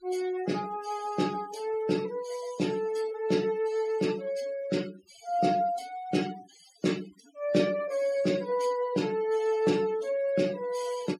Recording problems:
noise reduction artefacts; signal-to-artefact ratio 19 dB

